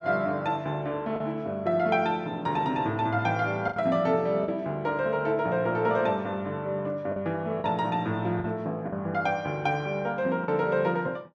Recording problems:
packet loss; 3% of the sound replaced, filled with the last packet

